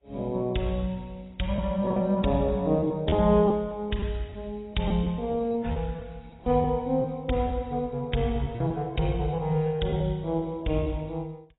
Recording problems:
lossy codec; AAC, log-spectral distance 6 dB, nothing above 3.8 kHz
lost packets; 6% of the sound replaced, filled with repeated pitch periods

